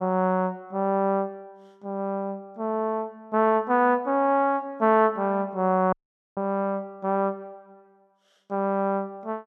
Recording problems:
audio cutting out; at 6 s

